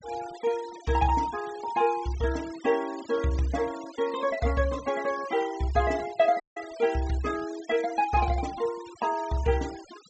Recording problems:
treble cut off; nothing above 8 kHz
noise reduction artefacts; signal-to-artefact ratio 17 dB
dropout; at 6.5 s

